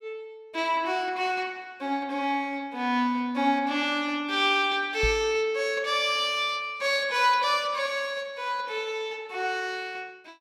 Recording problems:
microphone bump; at 5 s; peak -1 dB vs average level

